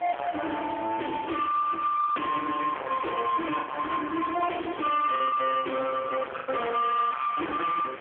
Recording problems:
phone line; 340 Hz to 3.3 kHz, AMR-NB
distortion; soft clipping, signal-to-distortion ratio 5 dB
wind on the microphone; below 2.4 kHz, SNR 19 dB
lost packets; 3% of the sound replaced, filled with the last packet

